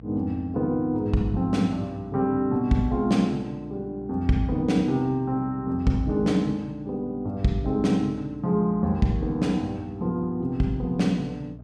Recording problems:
mains hum; 60 Hz, harmonics up to 480 Hz, SNR 20 dB

